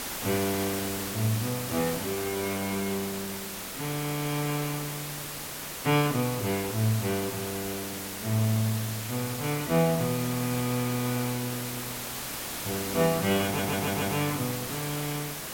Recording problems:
hiss; slope -2 dB per octave, SNR 4 dB
audio stuttering; at 13 s

